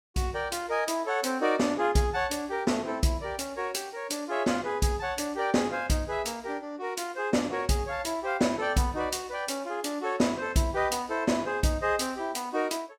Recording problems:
none

